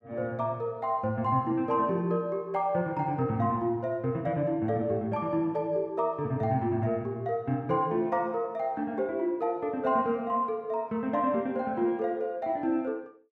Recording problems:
none

